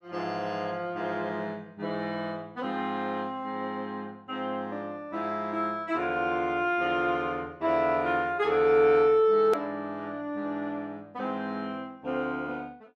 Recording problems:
hard cut with a click; at 9.5 s

